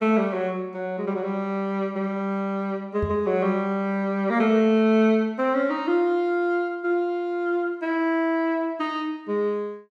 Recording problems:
microphone bump; at 3 s; peak -1 dB vs average level

